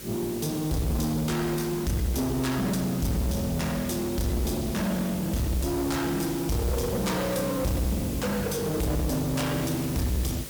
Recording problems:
distortion; soft clipping, signal-to-distortion ratio 6 dB
mains hum; 50 Hz, harmonics up to 600 Hz, SNR 18 dB
hiss; slope +1 dB per octave, SNR 11 dB

